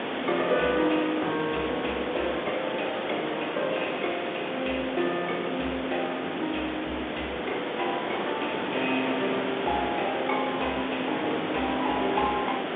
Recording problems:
telephone audio; 220 Hz to 3.7 kHz, G.711
background hiss; SNR 2 dB

